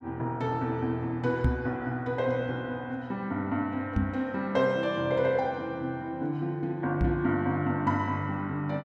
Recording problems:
knock on the microphone; at 1.5 s, at 4 s and at 7 s; peak +7 dB vs average level

